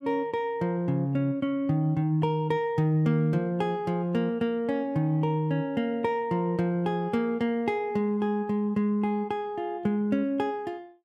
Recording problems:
none

